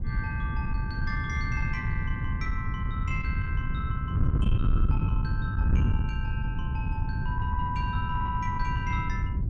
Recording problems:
distortion; soft clipping, signal-to-distortion ratio 11 dB
wind on the microphone; below 120 Hz, SNR -6 dB

